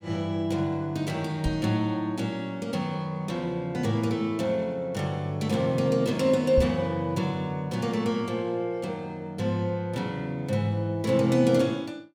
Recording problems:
microphone thump; at 1.5 s and at 6.5 s; peak +4 dB vs average level

